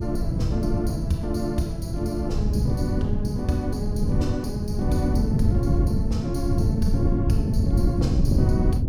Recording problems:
electrical hum; 50 Hz, harmonics up to 600 Hz, SNR 24 dB
wind noise; below 160 Hz, SNR -4 dB

